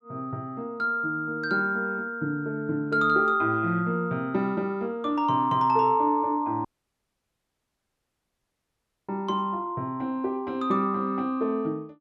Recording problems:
audio cutting out; at 6.5 s for 2.5 s

